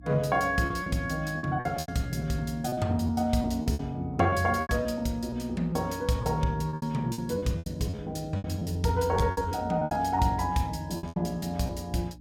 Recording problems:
hum; 60 Hz, harmonics up to 300 Hz, SNR 19 dB
lost packets; 13% of the sound replaced, filled with repeated pitch periods

